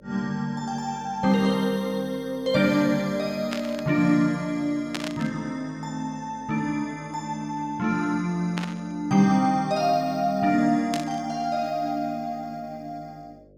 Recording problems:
electrical hum; 50 Hz, harmonics up to 600 Hz, SNR 28 dB
static burst; 4 times, first at 3.5 s; peak -1 dB vs average level

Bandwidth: 17.5 kHz